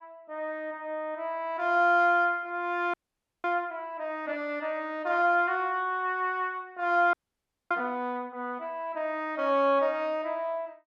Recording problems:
frozen audio; at 3 s for 0.5 s and at 7 s for 0.5 s

